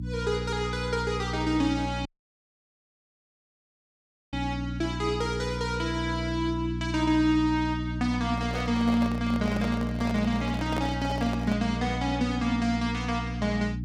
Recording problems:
hum; 60 Hz, harmonics up to 300 Hz, SNR 5 dB
audio cutting out; at 2 s for 2.5 s
microphone handling noise; from 8.5 to 12 s; peak -1 dB vs average level

